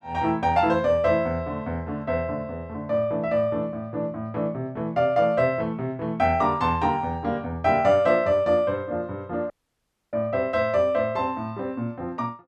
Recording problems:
audio cutting out; at 9.5 s for 0.5 s

